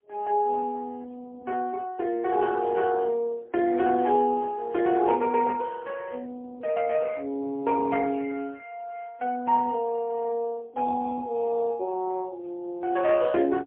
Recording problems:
phone line; 260 Hz to 2.8 kHz, AMR-NB, then MP3

